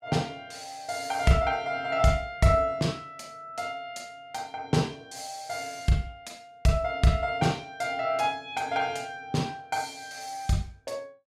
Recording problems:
none

